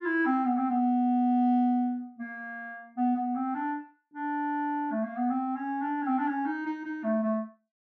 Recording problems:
none

